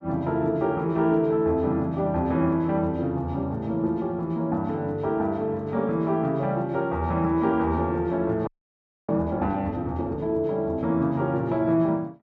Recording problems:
frozen audio; at 8.5 s for 0.5 s

